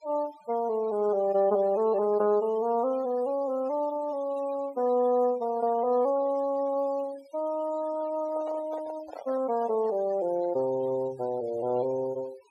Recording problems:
noise reduction artefacts; signal-to-artefact ratio 22 dB
microphone handling noise; from 8 to 10 s; peak -9 dB vs average level

